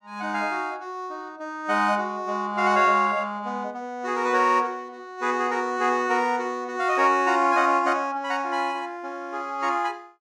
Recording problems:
none

